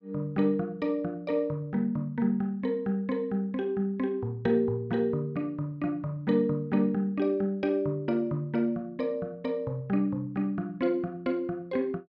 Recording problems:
none

